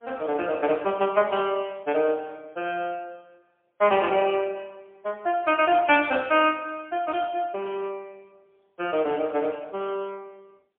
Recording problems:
phone line; 300 Hz to 3.3 kHz, AMR-NB, then MP3

